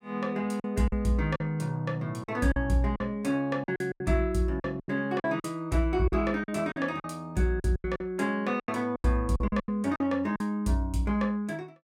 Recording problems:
packet loss; 11% of the sound replaced, filled with silence

